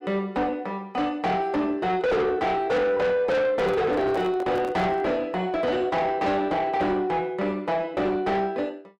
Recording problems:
distorted audio; soft clipping, signal-to-distortion ratio 6 dB
microphone handling noise; from 3.5 to 5 s; peak -6 dB vs average level

